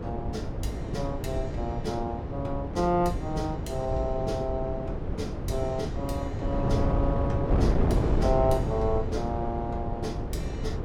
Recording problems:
wind on the microphone; below 300 Hz, SNR -1 dB

